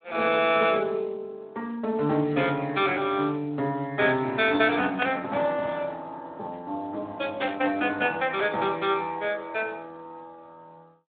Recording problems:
telephone audio; 170 Hz to 3.7 kHz, Speex
static burst; at 5 s and at 7.5 s; peak -2 dB vs average level

